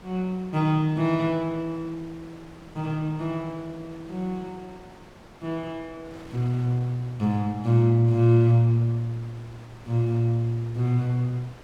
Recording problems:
wind on the microphone; below 1.3 kHz, SNR 23 dB

